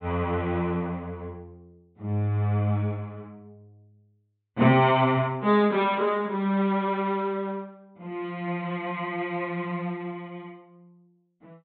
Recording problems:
treble cut off; nothing above 4 kHz

